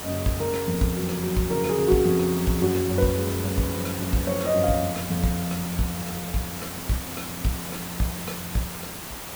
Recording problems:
hiss; slope -3 dB per octave, SNR 7 dB

